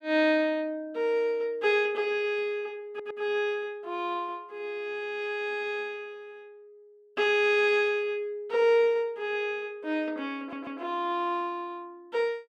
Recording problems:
audio stuttering; at 3 s and at 10 s

